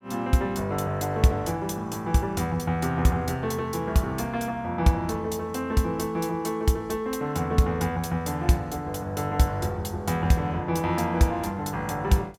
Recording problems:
none

